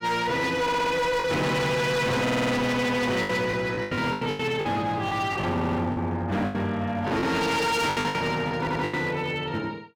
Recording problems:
distorted audio; hard clipping, signal-to-distortion ratio 7 dB
packet loss; 10% of the sound replaced, filled with the last packet
stutter; 4 times, first at 0.5 s

